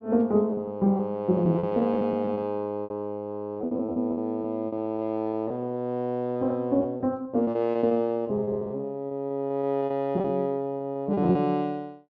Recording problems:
lost packets; 15% of the sound replaced, filled with repeated pitch periods

